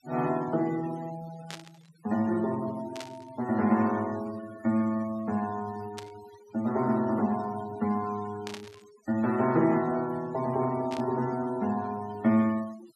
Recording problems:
denoising artefacts; signal-to-artefact ratio 18 dB
static burst; 5 times, first at 1.5 s; peak -7 dB vs average level

